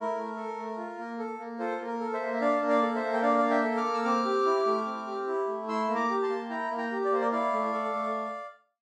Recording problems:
none

